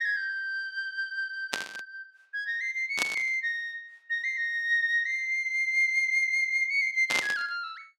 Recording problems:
burst of static; at 1.5 s, at 3 s and at 7 s; peak +2 dB vs average level

